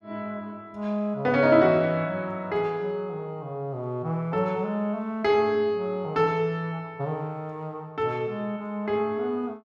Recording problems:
none

